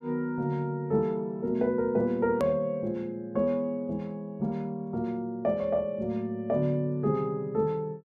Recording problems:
hard cut with a click; at 2.5 s

